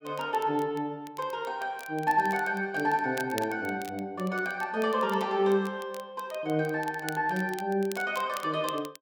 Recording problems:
crackling; vinyl, SNR 18 dB

